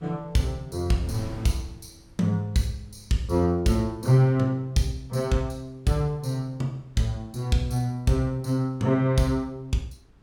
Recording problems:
wind on the microphone; below 250 Hz, SNR 24 dB

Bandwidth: 17.5 kHz